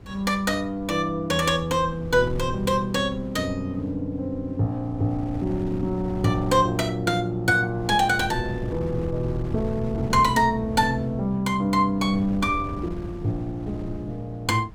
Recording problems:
wind on the microphone; below 200 Hz, SNR 13 dB

